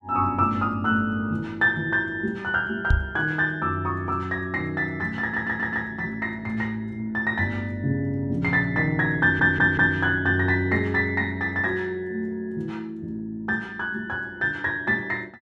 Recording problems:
knock on the microphone; at 3 s; peak +6 dB vs average level
stutter; at 5 s and at 9 s

